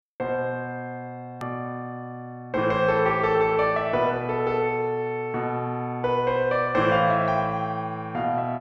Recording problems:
hard cut with a click; at 1.5 s

